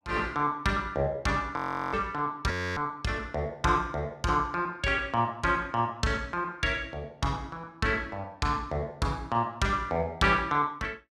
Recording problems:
frozen audio; at 1.5 s and at 2.5 s

